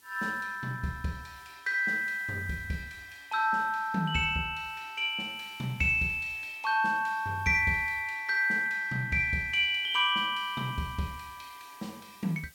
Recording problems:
background hiss; slope 0 dB per octave, SNR 28 dB

